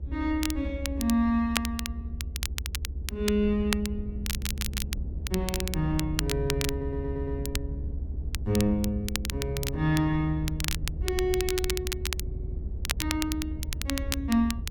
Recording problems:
hum; 50 Hz, harmonics up to 450 Hz, SNR 25 dB
rumble; below 74 Hz, SNR 5 dB
crackling; vinyl, SNR 5 dB
audio stuttering; at 4.5 s, at 6.5 s and at 12 s

